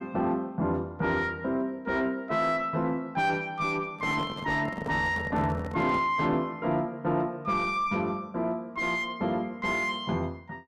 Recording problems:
distorted audio; soft clipping, signal-to-distortion ratio 6 dB
handling noise; from 4 to 6 s; peak -3 dB vs average level

